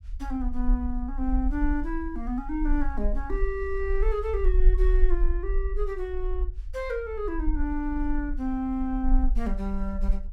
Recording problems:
low-frequency rumble; below 42 Hz, strongest tone 22 Hz, SNR 0 dB

